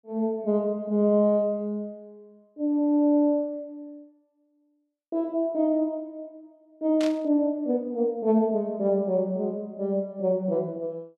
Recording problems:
burst of static; at 7 s; peak -7 dB vs average level

